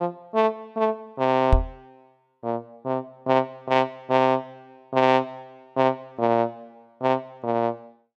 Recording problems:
knock on the microphone; at 1.5 s; peak +8 dB vs average level

